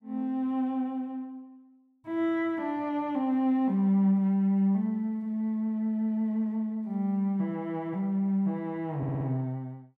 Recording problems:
stutter; at 9 s

